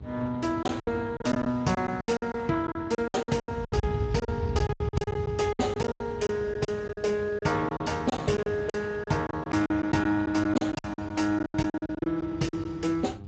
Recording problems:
lossy codec; Speex, log-spectral distance 3 dB, nothing above 7.6 kHz
hum; 50 Hz, harmonics up to 1.3 kHz, SNR 20 dB
wind noise; below 140 Hz, SNR 10 dB
packet loss; 17% of the sound replaced, filled with silence

